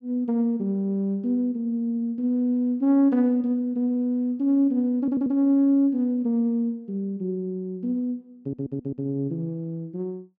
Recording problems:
stutter; at 5 s and at 8.5 s

